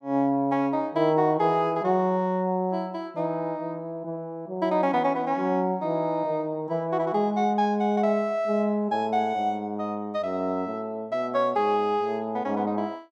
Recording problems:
none

